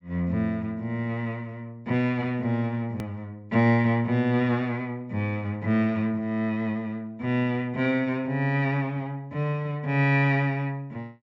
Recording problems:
low-pass filter; nothing above 8 kHz
hard cut with a click; at 3 s

